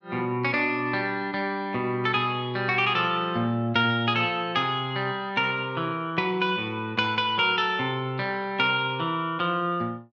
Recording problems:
none

